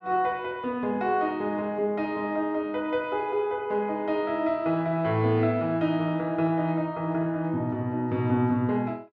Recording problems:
none

